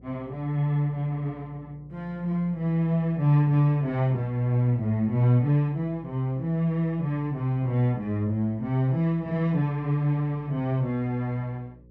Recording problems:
mains hum; 60 Hz, harmonics up to 540 Hz, SNR 27 dB

